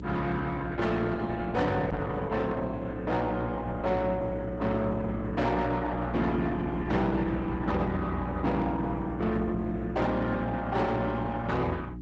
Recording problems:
codec artefacts; Opus, log-spectral distance 2 dB
distortion; soft clipping, signal-to-distortion ratio 10 dB
hum; 60 Hz, harmonics up to 360 Hz, SNR 7 dB
microphone bump; at 2 s; peak 0 dB vs average level

